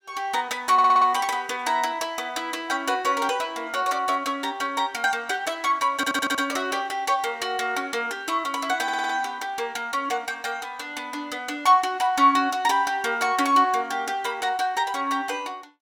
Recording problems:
stutter; at 0.5 s, at 6 s and at 9 s

